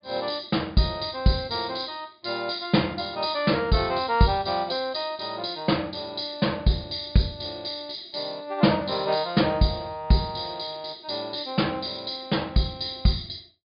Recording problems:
low-pass filter; nothing above 5 kHz

